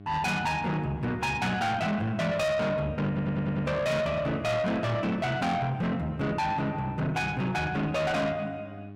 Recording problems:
distortion; soft clipping, signal-to-distortion ratio 7 dB
mains hum; 50 Hz, harmonics up to 1.4 kHz, SNR 17 dB
audio stuttering; at 3 s

